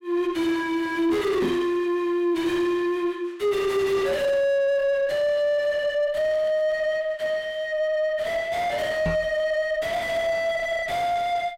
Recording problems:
distortion; soft clipping, signal-to-distortion ratio 5 dB
microphone thump; at 1.5 s and at 9 s; peak +6 dB vs average level

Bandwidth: 16 kHz